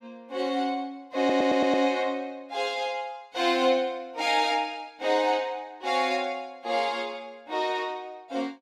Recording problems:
audio stuttering; at 1 s

